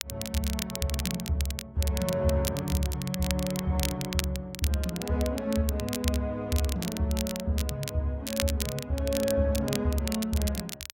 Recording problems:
crackle; vinyl, SNR 7 dB

